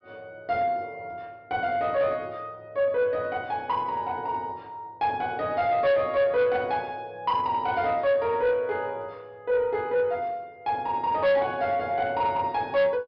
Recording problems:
treble cut off; nothing above 5.5 kHz
distorted audio; soft clipping, signal-to-distortion ratio 11 dB

